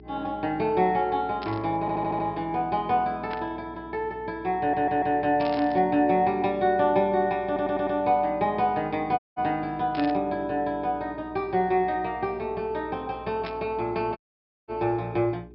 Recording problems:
treble missing; nothing above 5.3 kHz
hum; 60 Hz, harmonics up to 420 Hz, SNR 22 dB
static burst; 5 times, first at 1.5 s; peak -7 dB vs average level
audio stuttering; at 2 s, at 4.5 s and at 7.5 s
dropout; at 9 s and at 14 s for 0.5 s

